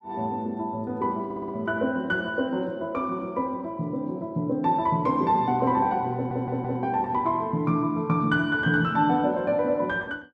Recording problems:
stutter; at 1.5 s and at 6 s

